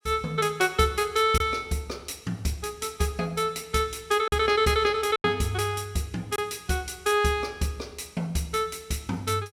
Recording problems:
lost packets; 1.7% of the sound replaced, filled with silence

